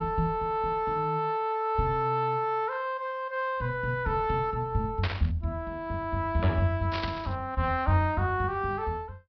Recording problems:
treble cut off; nothing above 5.5 kHz
static burst; at 5 s and at 7 s; peak 0 dB vs average level

